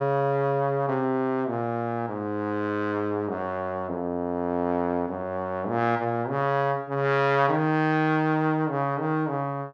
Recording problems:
none

